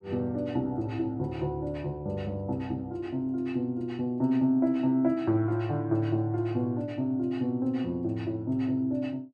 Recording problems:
none

